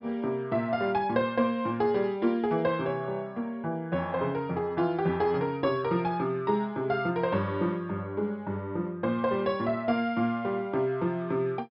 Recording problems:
low-pass filter; nothing above 5.2 kHz

